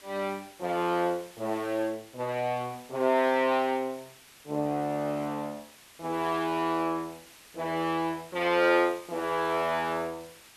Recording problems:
background hiss; slope 0 dB per octave, SNR 21 dB

